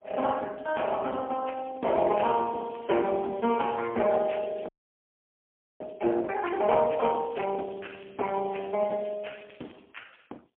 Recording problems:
telephone audio; 260 Hz to 3.3 kHz, AMR-NB, then MP3
crackling; from 2 to 4.5 s and from 7 to 10 s; loose cable, SNR 27 dB
audio freezing; at 4.5 s for 1 s

